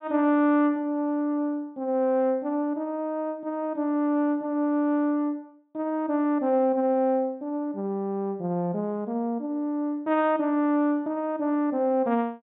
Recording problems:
low-pass filter; nothing above 3.9 kHz

